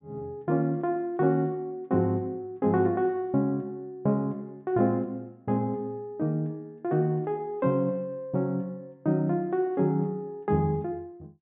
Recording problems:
treble cut off; nothing above 4 kHz

